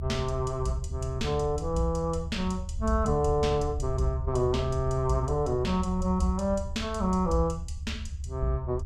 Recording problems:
low-frequency rumble; below 76 Hz, SNR 7 dB

